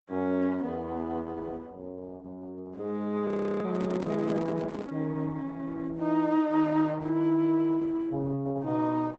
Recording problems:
lossy codec; Opus, log-spectral distance 2 dB, nothing above 7.6 kHz
audio freezing; at 3.5 s
handling noise; from 3.5 to 5 s; peak -3 dB vs average level

